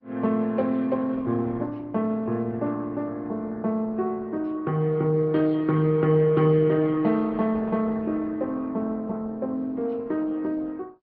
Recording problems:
treble missing; nothing above 5.5 kHz
codec artefacts; Opus, log-spectral distance 2 dB

